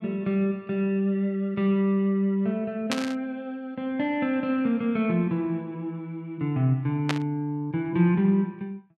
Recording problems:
static burst; at 3 s and at 7 s; peak +2 dB vs average level

